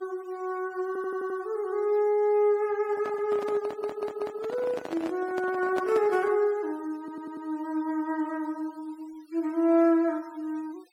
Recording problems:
denoising artefacts; signal-to-artefact ratio 26 dB
audio stuttering; at 1 s, at 3.5 s and at 7 s
handling noise; from 3 to 6.5 s; peak -3 dB vs average level

